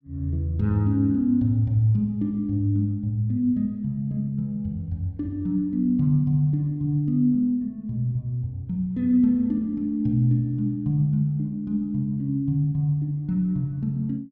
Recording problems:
none

